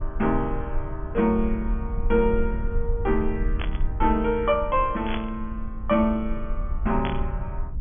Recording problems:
treble missing; nothing above 3.4 kHz
rumble; below 56 Hz, SNR 6 dB
static burst; at 3.5 s, at 5 s and at 7 s; peak -2 dB vs average level

